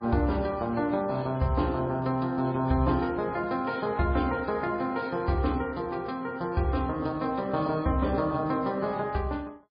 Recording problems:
lossy compression; MP3, log-spectral distance 2 dB, nothing above 4.2 kHz

